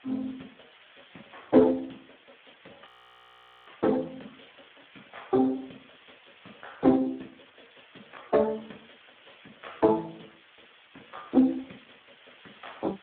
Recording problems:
telephone audio; 220 Hz to 3.6 kHz, Speex
background hiss; SNR 27 dB
frozen audio; at 3 s for 1 s

